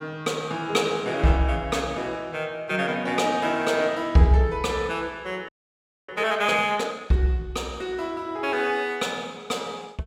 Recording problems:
frozen audio; at 5.5 s for 0.5 s

